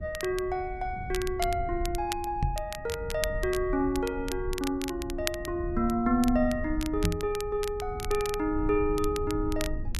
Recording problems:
rumble; below 82 Hz, SNR 9 dB
crackle; vinyl, SNR 11 dB
microphone bump; at 2.5 s and at 7 s; peak +5 dB vs average level

